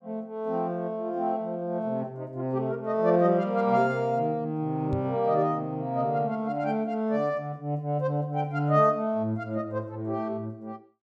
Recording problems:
microphone bump; at 5 s; peak -1 dB vs average level

